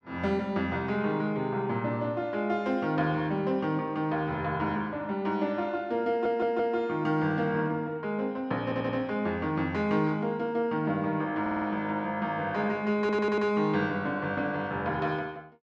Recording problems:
audio stuttering; 4 times, first at 6 s

